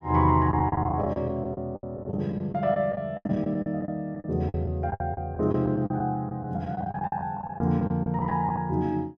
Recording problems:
packet loss; 16% of the sound replaced, filled with the last packet

